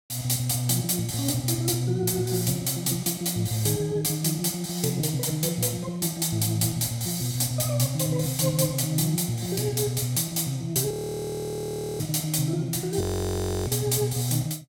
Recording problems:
audio freezing; at 11 s for 1 s and at 13 s for 0.5 s

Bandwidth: 18 kHz